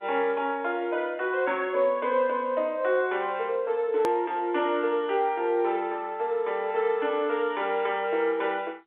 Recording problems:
phone line; 300 Hz to 3.7 kHz, G.711
edit click; at 4 s

